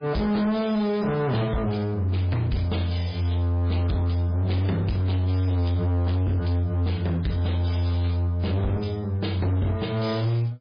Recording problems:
codec artefacts; MP3, log-spectral distance 3 dB, nothing above 5 kHz
distorted audio; hard clipping, signal-to-distortion ratio 8 dB

